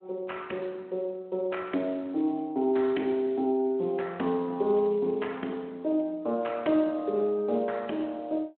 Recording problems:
phone line; 190 Hz to 3.4 kHz, Speex

